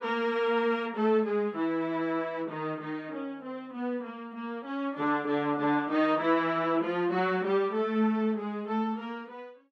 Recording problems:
none

